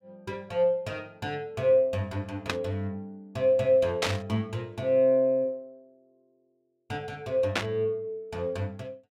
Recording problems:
static burst; at 2.5 s, at 4 s and at 7.5 s; peak +5 dB vs average level

